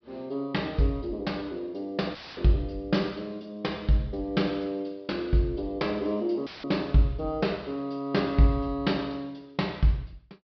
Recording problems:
treble missing; nothing above 5.5 kHz
dropout; at 2 s and at 6.5 s; filled with static

